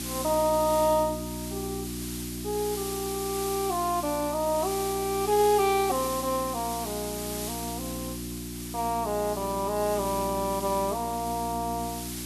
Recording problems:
hum; 60 Hz, harmonics up to 360 Hz, SNR 10 dB
hiss; slope +2 dB per octave, SNR 8 dB

